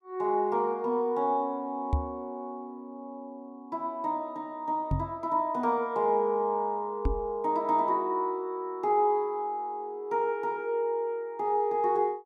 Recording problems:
microphone bump; at 2 s, at 5 s and at 7 s; peak +5 dB vs average level

